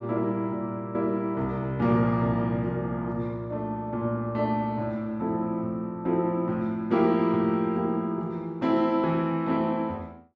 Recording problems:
none

